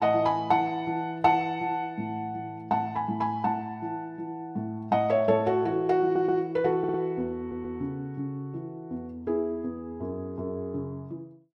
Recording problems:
audio stuttering; at 6 s, at 7 s and at 7.5 s

